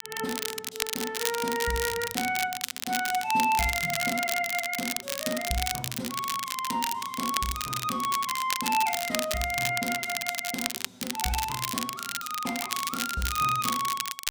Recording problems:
crackle; vinyl, SNR 2 dB

